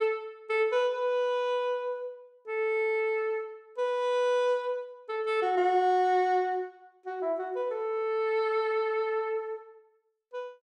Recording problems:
none

